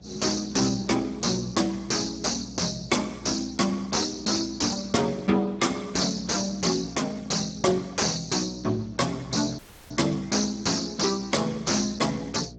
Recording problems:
lossy compression; Speex, log-spectral distance 10 dB
distorted audio; soft clipping, signal-to-distortion ratio 7 dB
hum; 60 Hz, harmonics up to 720 Hz, SNR 20 dB
audio cutting out; at 9.5 s

